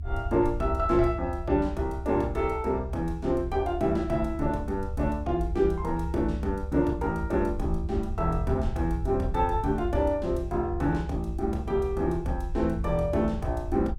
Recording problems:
low-frequency rumble; below 74 Hz, SNR 7 dB

